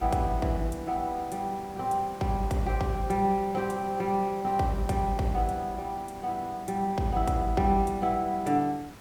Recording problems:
background hiss; slope -5 dB per octave, SNR 18 dB

